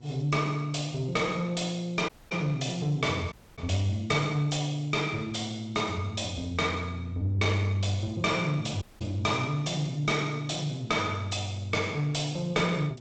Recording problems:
lossy compression; AAC, then G.722, log-spectral distance 3 dB, nothing above 8 kHz
distortion; soft clipping, signal-to-distortion ratio 11 dB
hum; 60 Hz, harmonics up to 960 Hz, SNR 19 dB
dropout; at 2 s, at 3.5 s and at 9 s

